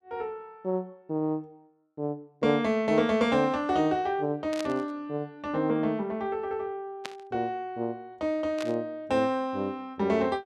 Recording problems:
static burst; at 4.5 s, at 7 s and at 8.5 s; peak -3 dB vs average level

